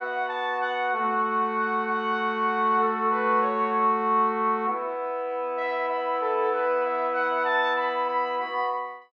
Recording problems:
none

